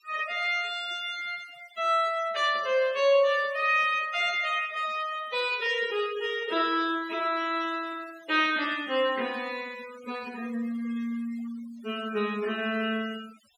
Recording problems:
noise reduction artefacts; signal-to-artefact ratio 18 dB

